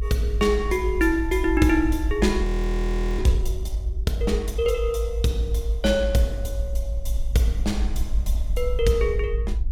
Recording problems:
low-frequency rumble; below 56 Hz, SNR 3 dB
frozen audio; at 2.5 s for 0.5 s

